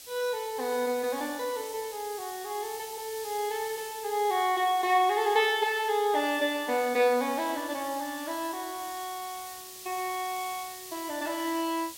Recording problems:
hiss; SNR 12 dB

